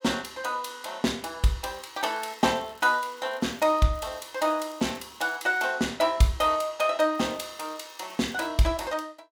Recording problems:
crackling; from 1.5 to 4 s, from 4 to 5.5 s and from 7 to 8.5 s; loose cable, SNR 26 dB

